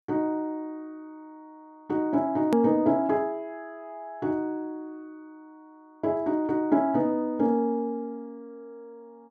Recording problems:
edit click; at 2.5 s

